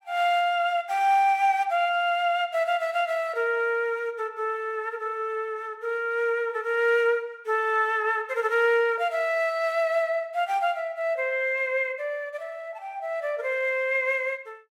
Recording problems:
none

